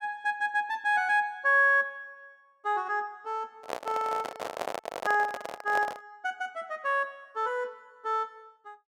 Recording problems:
handling noise; from 3.5 to 6 s; peak -1 dB vs average level

